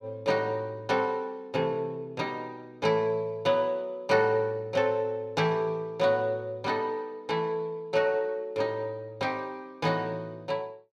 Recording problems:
none

